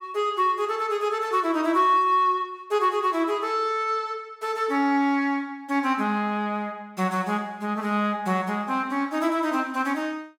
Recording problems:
none

